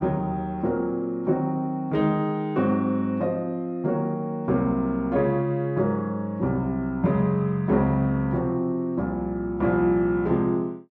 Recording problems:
none

